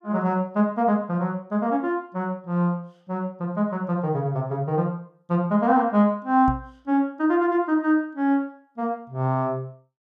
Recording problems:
knock on the microphone; at 6.5 s; peak -1 dB vs average level

